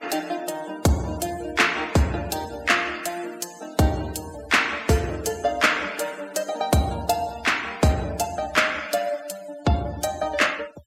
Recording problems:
noise reduction artefacts; signal-to-artefact ratio 19 dB

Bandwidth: 16 kHz